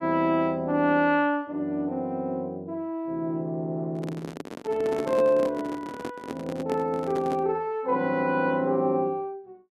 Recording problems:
microphone handling noise; from 4 to 7.5 s; peak -3 dB vs average level

